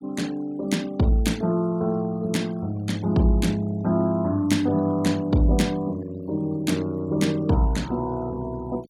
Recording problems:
denoising artefacts; signal-to-artefact ratio 23 dB

